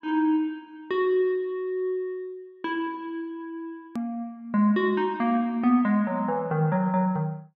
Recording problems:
click at an edit; at 4 s

